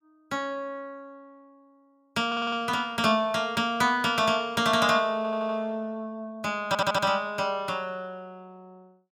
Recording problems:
audio stuttering; at 2.5 s, at 5 s and at 6.5 s

